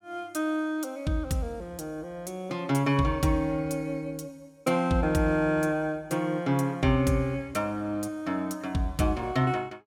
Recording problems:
none

